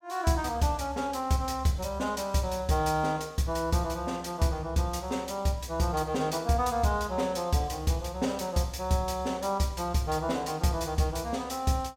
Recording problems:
none

